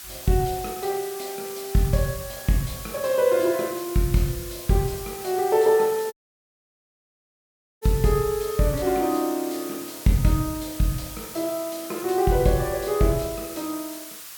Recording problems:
hiss; SNR 12 dB
audio cutting out; at 6 s for 1.5 s

